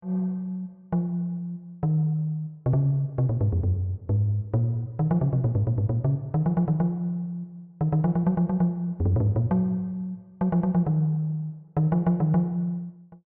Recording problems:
none

